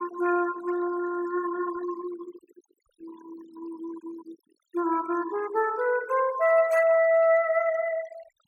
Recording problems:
noise reduction artefacts; signal-to-artefact ratio 19 dB

